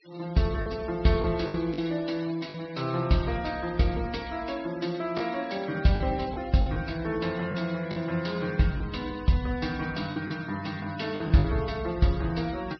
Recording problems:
treble cut off; nothing above 5.5 kHz
denoising artefacts; signal-to-artefact ratio 19 dB
lost packets; 5% of the sound replaced, filled with the last packet

